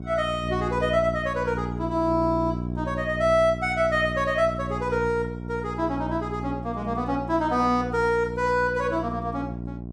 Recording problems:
hum; 60 Hz, harmonics up to 780 Hz, SNR 8 dB

